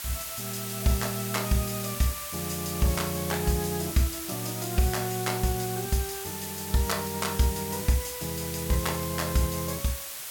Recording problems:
hiss; slope +1 dB per octave, SNR 5 dB

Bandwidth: 17 kHz